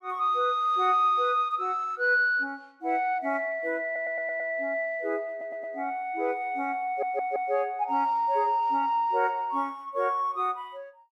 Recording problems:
stutter; at 4 s, at 5.5 s and at 7 s

